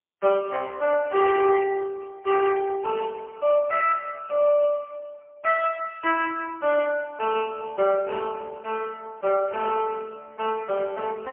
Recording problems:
telephone audio; 300 Hz to 2.9 kHz, AMR-NB, then MP3

